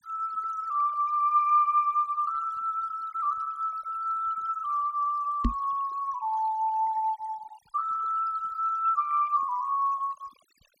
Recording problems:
denoising artefacts; signal-to-artefact ratio 23 dB
knock on the microphone; at 5.5 s; peak +4 dB vs average level

